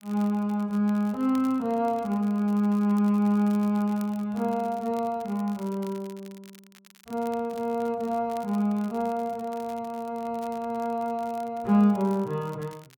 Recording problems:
crackling; vinyl, SNR 26 dB

